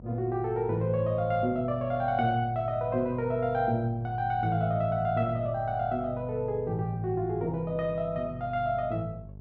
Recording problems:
hum; 50 Hz, harmonics up to 650 Hz, SNR 17 dB

